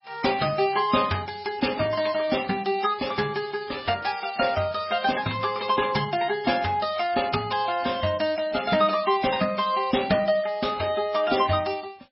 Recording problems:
codec artefacts; MP3, log-spectral distance 6 dB, nothing above 5.3 kHz

